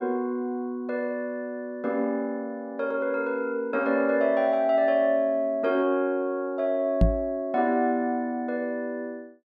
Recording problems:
knock on the microphone; at 7 s; peak +8 dB vs average level

